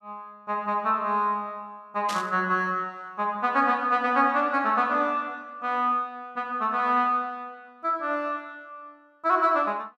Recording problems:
static burst; at 2 s; peak -4 dB vs average level

